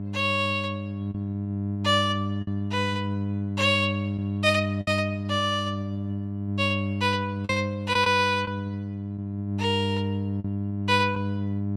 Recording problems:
hum; 50 Hz, harmonics up to 700 Hz, SNR 4 dB
lost packets; 3% of the sound replaced, filled with the last packet

